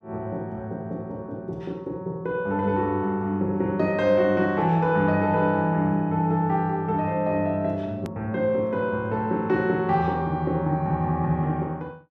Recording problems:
click at an edit; at 8 s

